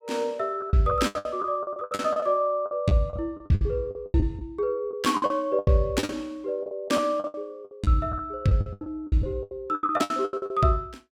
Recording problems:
lost packets; 20% of the sound replaced, filled with the last packet

